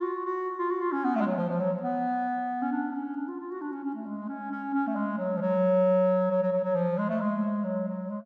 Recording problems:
none

